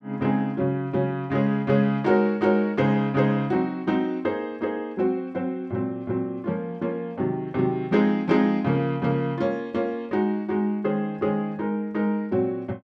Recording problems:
none

